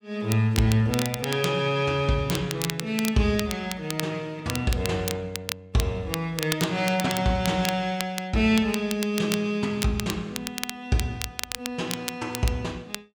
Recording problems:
crackle; vinyl, SNR 8 dB

